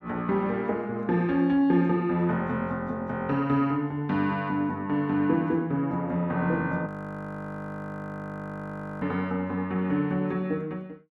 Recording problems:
frozen audio; at 7 s for 2 s

